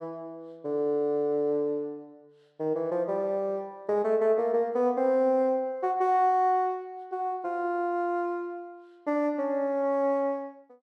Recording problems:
none

